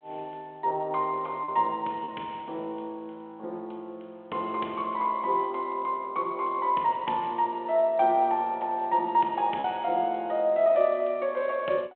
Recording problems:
phone line; 300 Hz to 3.4 kHz, G.726
lost packets; 1% of the sound replaced, filled with repeated pitch periods

